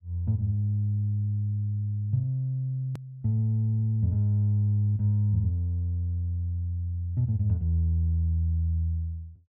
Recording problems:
edit click; at 3 s

